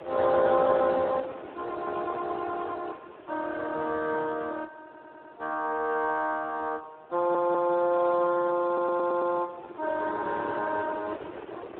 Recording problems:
phone line; 280 Hz to 2.2 kHz, Speex
wind noise; below 810 Hz, SNR 17 dB
stutter; at 5 s, at 7 s and at 8.5 s

